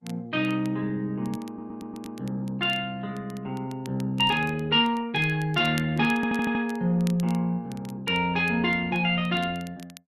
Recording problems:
lossy compression; Opus, log-spectral distance 2 dB
crackling; vinyl, SNR 23 dB
audio stuttering; at 1.5 s and at 6 s

